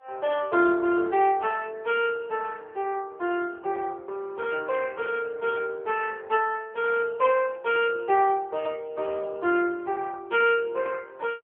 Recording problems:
telephone audio; 300 Hz to 3.2 kHz, AMR-NB

